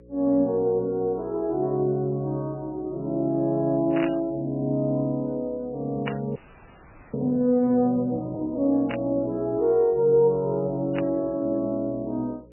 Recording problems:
codec artefacts; MP3, log-spectral distance 2 dB, nothing above 10.7 kHz
electrical hum; 60 Hz, harmonics up to 540 Hz, SNR 26 dB
burst of static; 4 times, first at 4 s; peak -3 dB vs average level
audio freezing; at 6.5 s for 1 s

